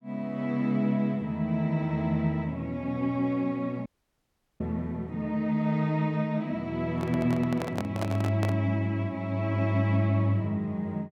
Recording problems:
audio cutting out; at 4 s for 0.5 s
microphone handling noise; from 7 to 8.5 s; peak 0 dB vs average level

